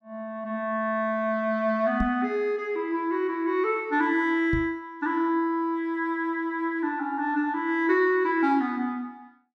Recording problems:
microphone bump; at 2 s and at 4.5 s; peak +1 dB vs average level

